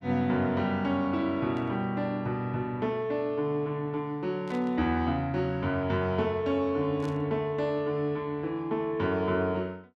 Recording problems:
static burst; at 1.5 s, at 4.5 s and at 7 s; peak -15 dB vs average level

